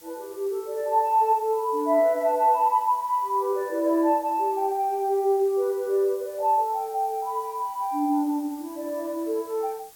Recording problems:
hiss; slope 0 dB per octave, SNR 24 dB

